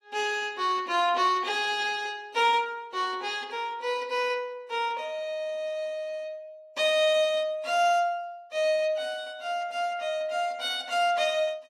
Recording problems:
codec artefacts; AAC, log-spectral distance 2 dB, nothing above 13.8 kHz

